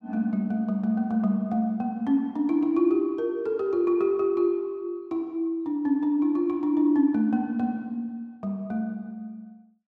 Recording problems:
none

